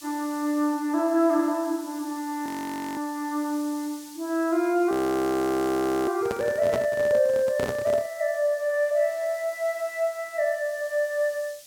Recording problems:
hiss; SNR 20 dB
audio freezing; at 2.5 s for 0.5 s and at 5 s for 1 s
microphone handling noise; from 6 to 8 s; peak -2 dB vs average level

